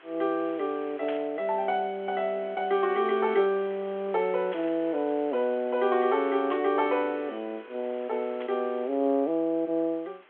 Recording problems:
phone line; 220 Hz to 3.6 kHz, G.726
background hiss; SNR 24 dB
static burst; 4 times, first at 1 s; peak -9 dB vs average level

